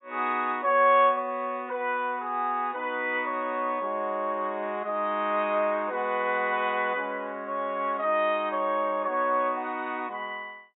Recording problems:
low-pass filter; nothing above 4 kHz

